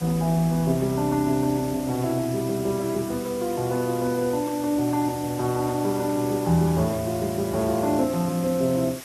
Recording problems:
lossy codec; AAC, log-spectral distance 6 dB
background hiss; slope -1 dB per octave, SNR 15 dB

